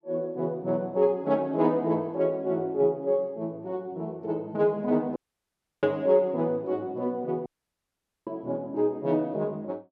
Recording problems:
dropout; at 5 s for 0.5 s and at 7.5 s for 1 s

